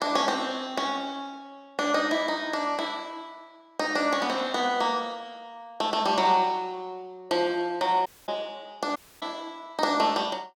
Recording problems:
audio cutting out; at 8 s and at 9 s

